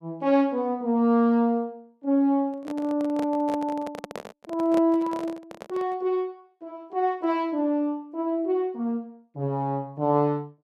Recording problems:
handling noise; from 2.5 to 6 s; peak -5 dB vs average level

